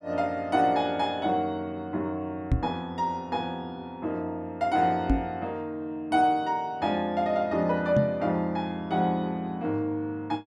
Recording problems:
knock on the microphone; at 2.5 s, at 5 s and at 8 s; peak +7 dB vs average level

